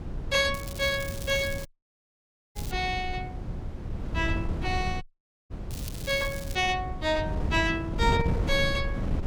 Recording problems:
wind noise; below 170 Hz, SNR 5 dB
crackling; from 0.5 to 2.5 s and at 5.5 s; loose cable, SNR 14 dB
audio cutting out; at 1.5 s for 1 s and at 5 s

